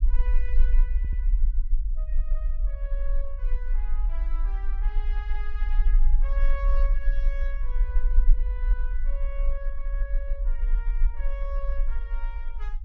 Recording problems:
treble missing; nothing above 7.6 kHz
rumble; below 38 Hz, strongest tone 24 Hz, SNR -16 dB
stutter; at 1 s

